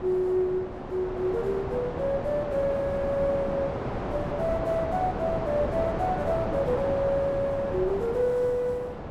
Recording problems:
wind on the microphone; below 790 Hz, SNR 5 dB

